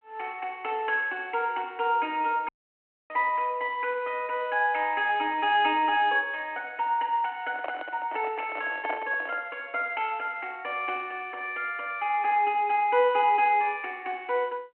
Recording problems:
phone line; 260 Hz to 3.2 kHz, G.726
dropout; at 2.5 s for 0.5 s
handling noise; from 7.5 to 9.5 s; peak -2 dB vs average level

